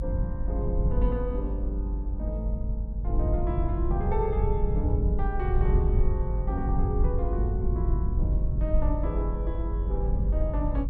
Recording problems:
low-frequency rumble; below 74 Hz, SNR -5 dB

